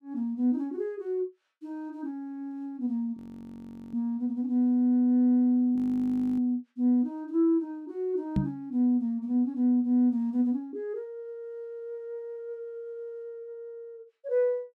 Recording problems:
frozen audio; at 3 s for 1 s and at 6 s for 0.5 s
microphone thump; at 8.5 s; peak +5 dB vs average level

